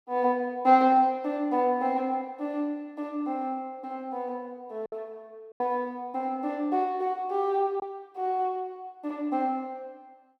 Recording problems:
lost packets; 1.6% of the sound replaced, filled with silence

